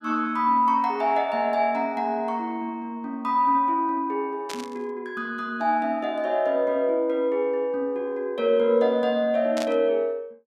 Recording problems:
static burst; at 4.5 s and at 9.5 s; peak -6 dB vs average level

